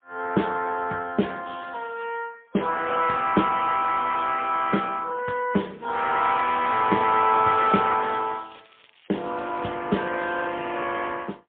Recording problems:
telephone audio; 150 Hz to 3.5 kHz, AMR-NB, then MP3
crackling; from 6 to 9.5 s; loose cable, SNR 29 dB

